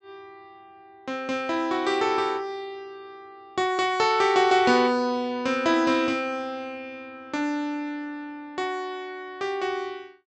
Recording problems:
treble cut off; nothing above 8 kHz

